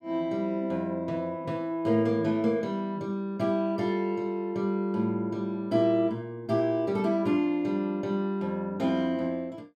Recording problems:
none

